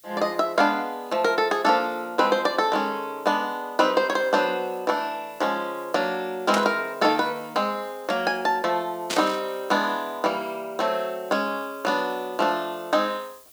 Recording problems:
hiss; SNR 25 dB
burst of static; at 6.5 s and at 9 s; peak +1 dB vs average level

